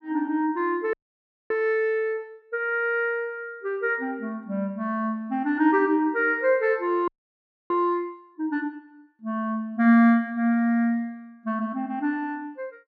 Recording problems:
audio freezing; at 1 s for 0.5 s and at 7 s for 0.5 s

